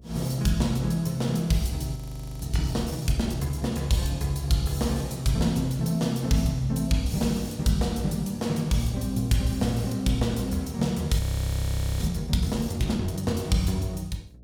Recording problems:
hum; 60 Hz, harmonics up to 540 Hz, SNR 24 dB
audio freezing; at 2 s and at 11 s for 1 s

